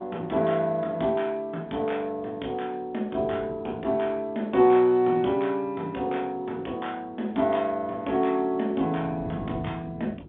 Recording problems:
telephone audio; 170 Hz to 3.6 kHz, G.711
wind noise; below 280 Hz, SNR 15 dB

